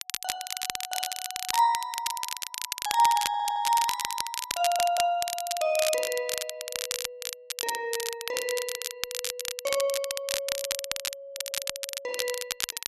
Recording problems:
crackling; vinyl, SNR 3 dB
stutter; at 3.5 s, at 4.5 s and at 11 s

